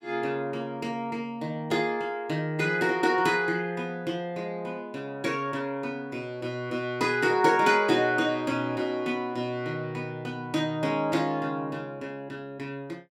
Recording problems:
none

